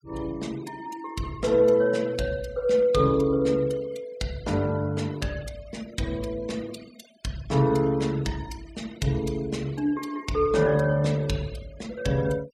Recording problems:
denoising artefacts; signal-to-artefact ratio 22 dB

